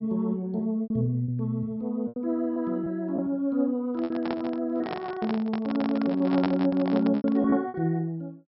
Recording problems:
low-pass filter; nothing above 5.4 kHz
lost packets; 8% of the sound replaced, filled with repeated pitch periods
microphone handling noise; from 4 to 7.5 s; peak 0 dB vs average level

